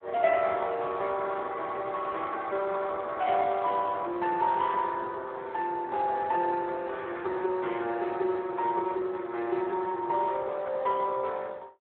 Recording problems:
telephone audio; 300 Hz to 3.6 kHz, Speex

